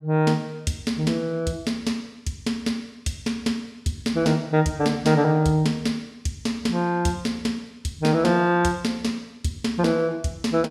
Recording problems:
none

